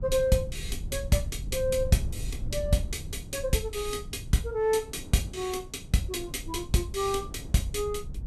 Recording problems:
low-frequency rumble; below 94 Hz, SNR 10 dB
wind on the microphone; below 290 Hz, SNR 19 dB

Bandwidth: 14.5 kHz